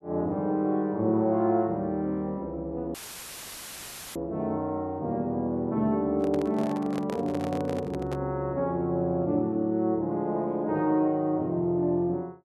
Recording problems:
audio cutting out; at 3 s for 1 s; filled with static
handling noise; from 6 to 8 s; peak -5 dB vs average level

